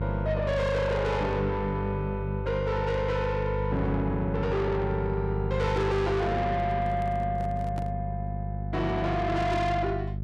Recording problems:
distorted audio; soft clipping, signal-to-distortion ratio 6 dB
hum; 50 Hz, harmonics up to 400 Hz, SNR 4 dB
handling noise; from 6.5 to 8 s; peak -6 dB vs average level

